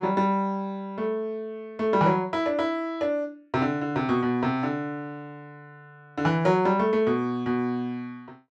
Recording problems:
none

